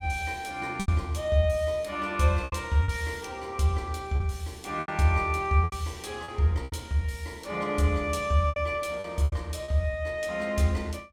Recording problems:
lost packets; 7% of the sound replaced, filled with repeated pitch periods

